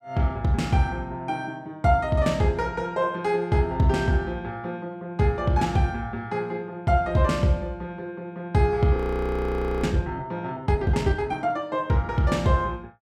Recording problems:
frozen audio; at 9 s for 1 s

